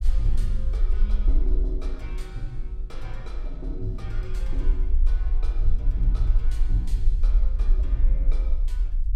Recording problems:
low-frequency rumble; below 44 Hz, SNR -11 dB

